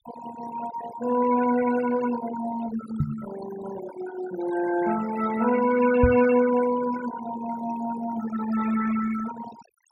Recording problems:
noise reduction artefacts; signal-to-artefact ratio 11 dB
microphone thump; at 3 s and at 6 s; peak +6 dB vs average level

